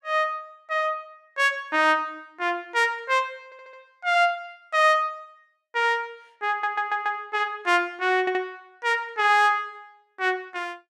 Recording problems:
audio stuttering; at 3.5 s, at 6.5 s and at 8 s

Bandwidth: 15.5 kHz